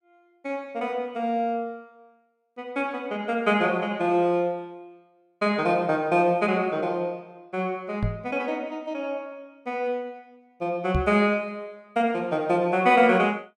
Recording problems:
knock on the microphone; at 8 s and at 11 s; peak +3 dB vs average level

